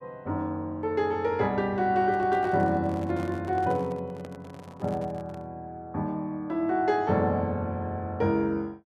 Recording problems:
microphone handling noise; from 2 to 5.5 s; peak -10 dB vs average level

